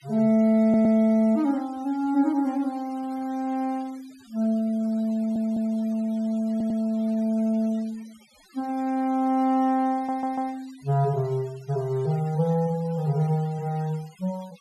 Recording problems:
noise reduction artefacts; signal-to-artefact ratio 27 dB
stutter; 4 times, first at 0.5 s

